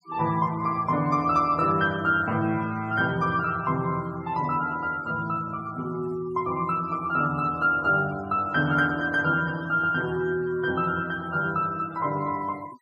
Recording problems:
denoising artefacts; signal-to-artefact ratio 22 dB

